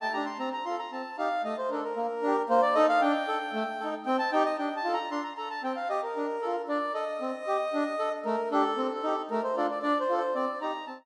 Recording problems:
none

